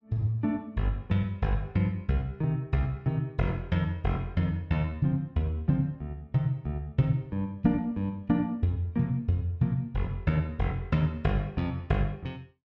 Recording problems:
none

